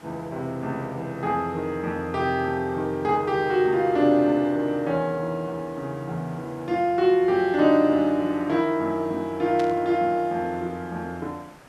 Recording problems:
hiss; slope -5 dB per octave, SNR 25 dB
static burst; at 9.5 s; peak -10 dB vs average level

